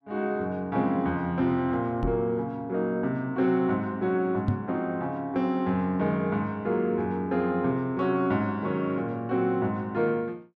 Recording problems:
knock on the microphone; at 2 s and at 4.5 s; peak +4 dB vs average level

